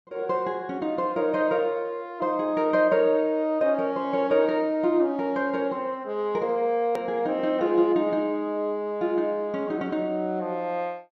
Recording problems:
edit click; at 7 s

